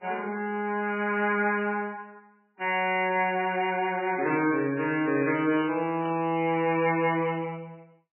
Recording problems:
lossy compression; MP3, log-spectral distance 5 dB, nothing above 2.8 kHz
burst of static; at 6 s; peak -11 dB vs average level

